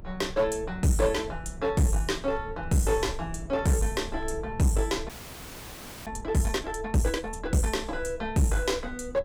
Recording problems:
distortion; hard clipping, uneven, signal-to-distortion ratio 9 dB
low-frequency rumble; below 94 Hz, strongest tone 22 Hz, SNR 14 dB
frozen audio; at 5 s for 1 s

